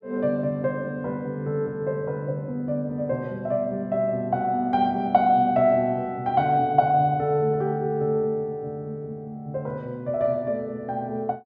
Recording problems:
none

